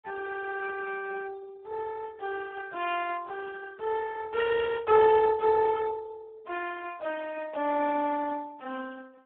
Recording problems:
telephone audio; 300 Hz to 2.7 kHz, Speex

